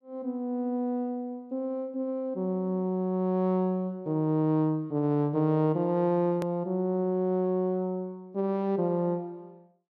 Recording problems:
edit click; at 6.5 s

